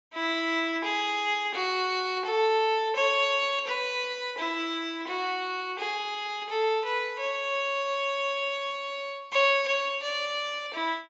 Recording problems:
low-pass filter; nothing above 8 kHz

